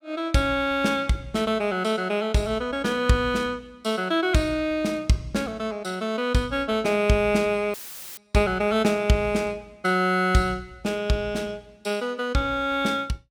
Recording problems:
dropout; at 7.5 s; filled with static

